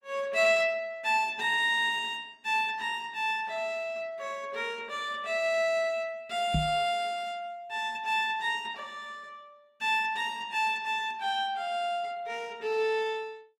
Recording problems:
codec artefacts; Opus, log-spectral distance 2 dB
microphone thump; at 6.5 s; peak +3 dB vs average level

